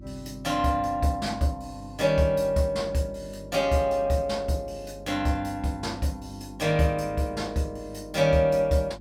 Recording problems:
hum; 50 Hz, harmonics up to 350 Hz, SNR 19 dB

